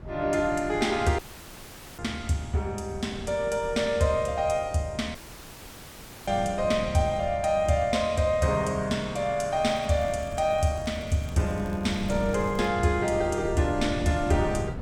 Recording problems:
wind on the microphone; below 200 Hz, SNR 13 dB
audio cutting out; at 1 s for 1 s and at 5 s for 1 s
crackle; from 9.5 to 13 s; loose cable, SNR 28 dB

